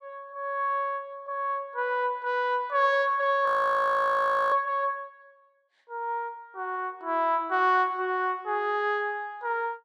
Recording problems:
frozen audio; at 3.5 s for 1 s

